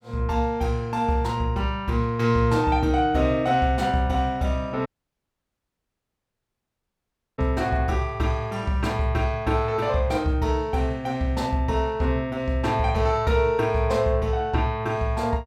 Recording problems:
dropout; at 5 s for 2.5 s

